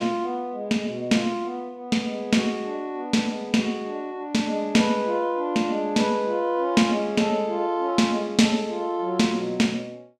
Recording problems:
none

